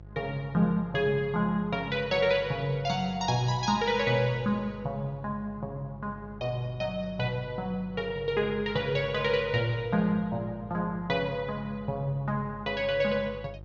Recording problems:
treble missing; nothing above 7 kHz
hum; 50 Hz, harmonics up to 700 Hz, SNR 18 dB

